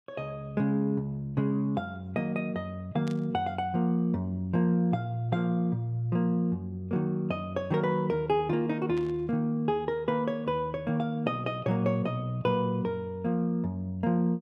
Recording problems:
burst of static; at 3 s and at 9 s; peak -12 dB vs average level

